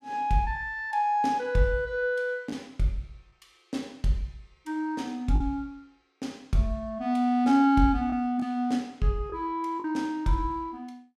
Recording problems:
packet loss; 1.7% of the sound replaced, filled with the last packet

